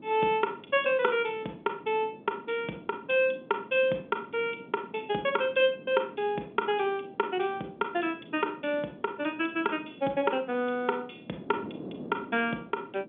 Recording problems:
telephone audio; 190 Hz to 3.5 kHz, G.711
wind on the microphone; below 430 Hz, SNR 18 dB

